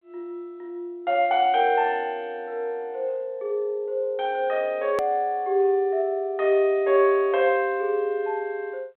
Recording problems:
telephone audio; 240 Hz to 3.7 kHz, G.726
hard cut with a click; at 5 s

